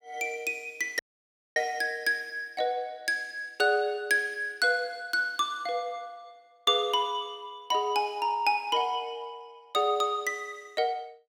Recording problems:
dropout; at 1 s for 0.5 s

